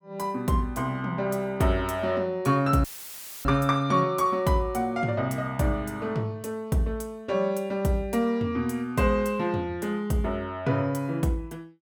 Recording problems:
audio cutting out; at 3 s for 0.5 s; filled with static

